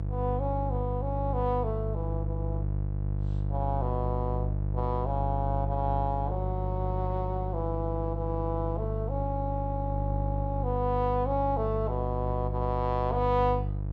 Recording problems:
hum; 50 Hz, harmonics up to 650 Hz, SNR 0 dB

